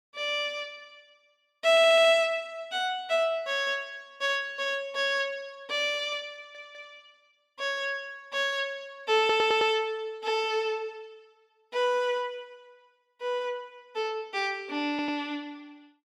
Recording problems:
audio stuttering; 4 times, first at 1.5 s

